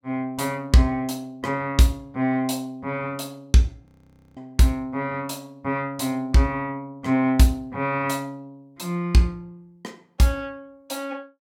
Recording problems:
audio freezing; at 4 s for 0.5 s

